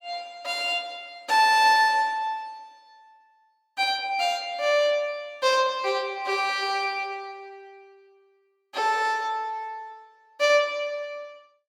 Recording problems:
none

